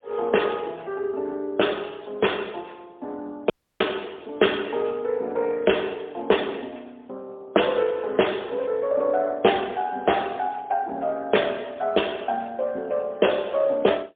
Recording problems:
telephone audio; 280 Hz to 3.4 kHz, AMR-NB, then MP3
dropout; at 3.5 s

